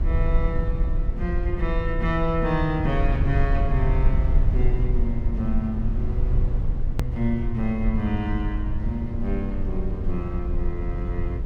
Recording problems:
rumble; below 70 Hz, SNR -2 dB
click at an edit; at 7 s

